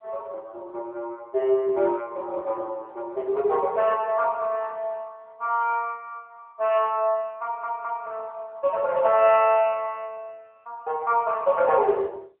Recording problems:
telephone audio; 340 Hz to 3.5 kHz, AMR-NB
audio stuttering; at 7.5 s

